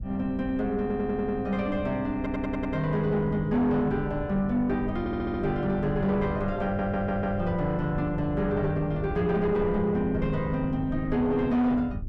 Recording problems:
distorted audio; soft clipping, signal-to-distortion ratio 12 dB
rumble; below 120 Hz, SNR 11 dB
audio stuttering; 4 times, first at 1 s

